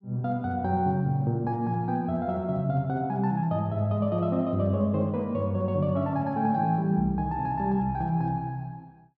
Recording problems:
none

